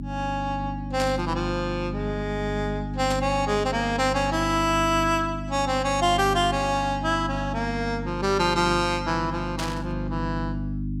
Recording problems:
electrical hum; 50 Hz, harmonics up to 300 Hz, SNR 7 dB
burst of static; at 1 s, at 3 s and at 9.5 s; peak -3 dB vs average level

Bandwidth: 16.5 kHz